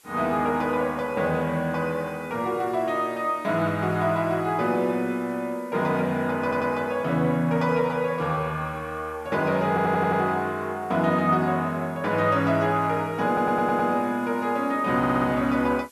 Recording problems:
hiss; slope 0 dB per octave, SNR 29 dB
stutter; 4 times, first at 6.5 s

